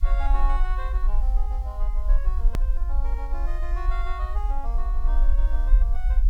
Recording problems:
hiss; slope +1 dB per octave, SNR 24 dB
rumble; below 44 Hz, SNR -12 dB
hard cut with a click; at 2.5 s

